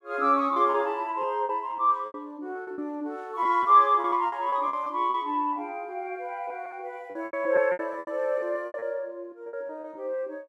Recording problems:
packet loss; 11% of the sound replaced, filled with repeated pitch periods

